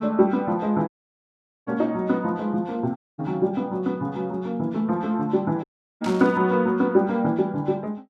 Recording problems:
dropout; at 1 s for 1 s, at 3 s and at 5.5 s
burst of static; at 6 s; peak -9 dB vs average level

